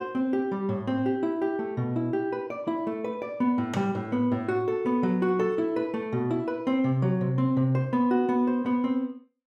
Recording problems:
none

